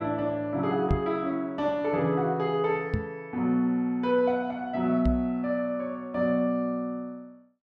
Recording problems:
microphone bump; at 1 s, at 3 s and at 5 s; peak +5 dB vs average level

